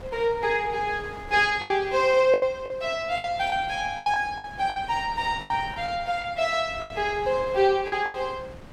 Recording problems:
wind on the microphone; below 740 Hz, SNR 19 dB
lost packets; 10% of the sound replaced, filled with the last packet

